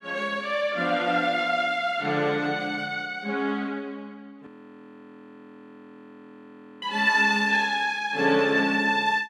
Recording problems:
audio freezing; at 4.5 s for 2.5 s

